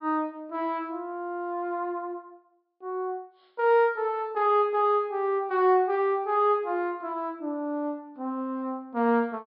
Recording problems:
treble cut off; nothing above 5.5 kHz

